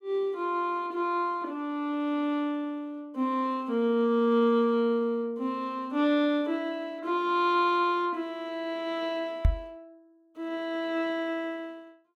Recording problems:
microphone bump; at 9.5 s; peak +8 dB vs average level

